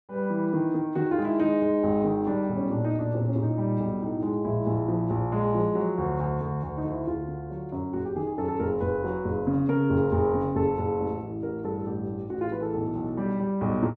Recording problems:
none

